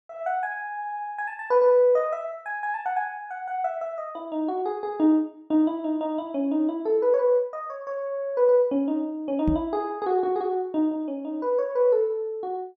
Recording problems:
knock on the microphone; at 9.5 s; peak +1 dB vs average level

